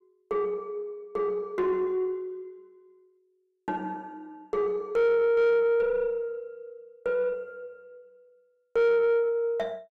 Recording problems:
distorted audio; soft clipping, signal-to-distortion ratio 7 dB

